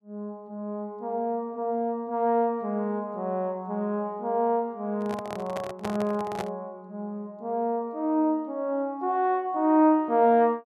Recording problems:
microphone handling noise; from 5 to 6.5 s; peak -2 dB vs average level

